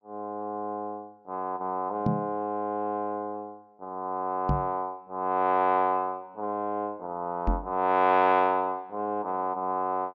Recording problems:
treble missing; nothing above 8 kHz
knock on the microphone; at 2 s, at 4.5 s and at 7.5 s; peak +4 dB vs average level

